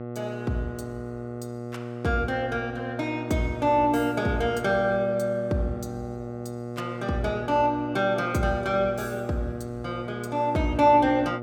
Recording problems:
electrical hum; 60 Hz, harmonics up to 1.4 kHz, SNR 9 dB

